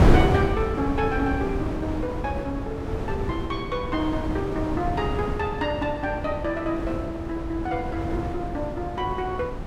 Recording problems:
wind on the microphone; below 390 Hz, SNR 1 dB

